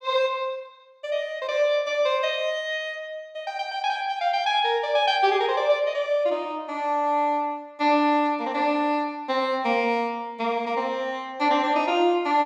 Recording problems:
none

